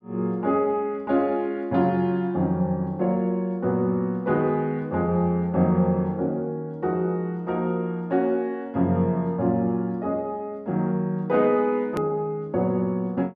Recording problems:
click at an edit; at 12 s

